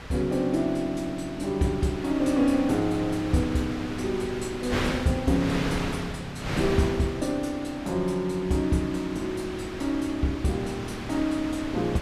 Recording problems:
wind noise; below 1.9 kHz, SNR 8 dB

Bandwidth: 14.5 kHz